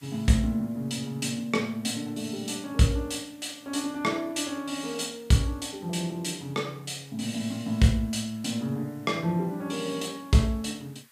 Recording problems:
hiss; SNR 28 dB

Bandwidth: 15 kHz